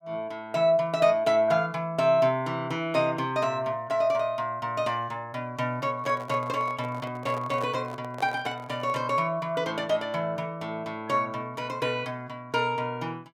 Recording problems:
handling noise; from 6 to 9 s; peak -7 dB vs average level

